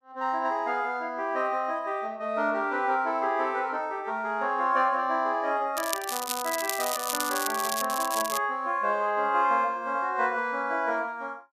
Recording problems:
crackling; from 6 to 8.5 s; loose cable, SNR 5 dB

